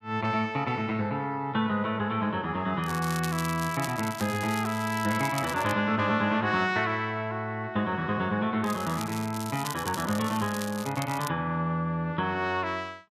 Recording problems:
crackle; from 3 to 5.5 s and from 8.5 to 11 s; loose cable, SNR 12 dB

